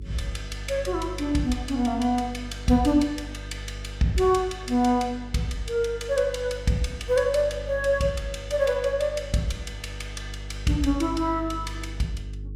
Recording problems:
electrical hum; 50 Hz, harmonics up to 450 Hz, SNR 13 dB

